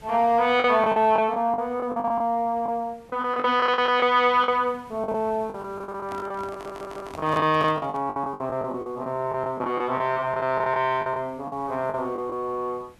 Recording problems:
hiss; slope -4 dB per octave, SNR 29 dB
lost packets; 14% of the sound replaced, filled with the last packet
microphone handling noise; from 6 to 8 s; peak -8 dB vs average level
stutter; at 6.5 s

